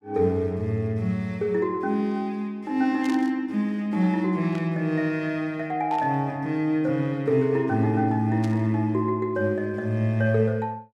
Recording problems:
static burst; 4 times, first at 3 s; peak -12 dB vs average level

